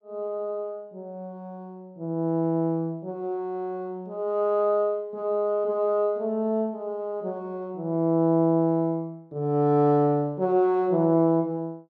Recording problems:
none

